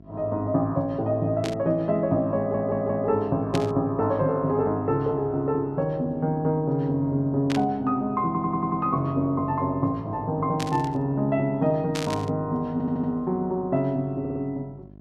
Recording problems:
hum; 50 Hz, harmonics up to 750 Hz, SNR 22 dB
static burst; 5 times, first at 1.5 s; peak -3 dB vs average level
audio stuttering; 4 times, first at 2.5 s

